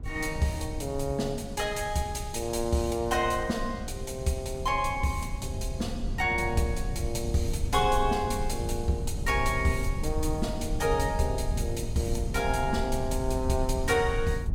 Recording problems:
rumble; below 100 Hz, SNR 6 dB

